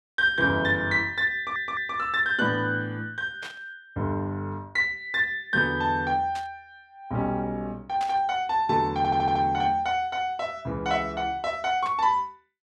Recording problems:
audio stuttering; at 1.5 s and at 9 s
burst of static; 4 times, first at 3.5 s; peak -9 dB vs average level

